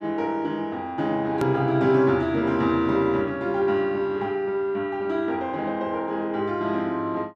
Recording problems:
edit click; at 1.5 s

